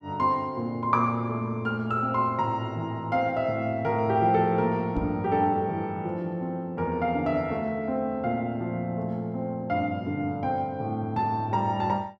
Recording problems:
knock on the microphone; at 5 s; peak -2 dB vs average level

